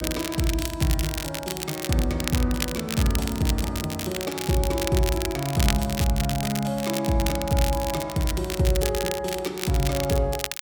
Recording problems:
crackling; vinyl, SNR 6 dB

